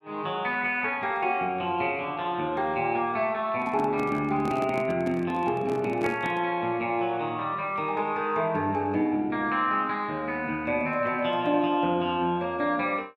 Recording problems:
handling noise; from 3.5 to 6.5 s; peak -3 dB vs average level

